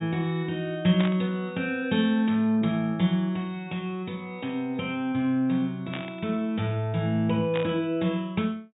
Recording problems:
treble cut off; nothing above 4 kHz
static burst; at 1 s, at 6 s and at 7.5 s; peak -3 dB vs average level

